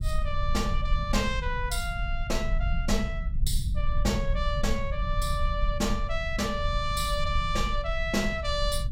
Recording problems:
rumble; below 62 Hz, SNR 2 dB

